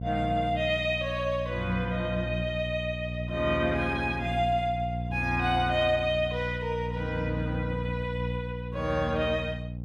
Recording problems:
hum; 60 Hz, harmonics up to 540 Hz, SNR 6 dB

